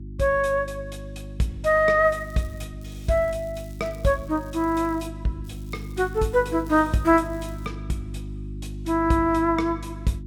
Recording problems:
electrical hum; 50 Hz, harmonics up to 350 Hz, SNR 13 dB
crackling; at 2 s, from 3 to 5 s and from 5.5 to 7.5 s; loose cable, SNR 29 dB

